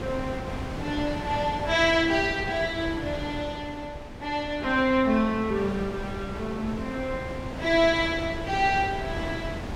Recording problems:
wind on the microphone; below 670 Hz, SNR 9 dB

